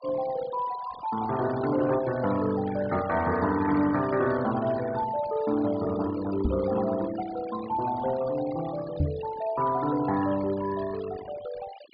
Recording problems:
low-pass filter; nothing above 5 kHz
denoising artefacts; signal-to-artefact ratio 15 dB
knock on the microphone; at 6.5 s and at 9 s; peak +5 dB vs average level

